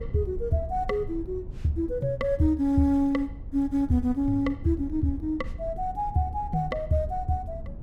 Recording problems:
rumble; below 82 Hz, SNR 13 dB

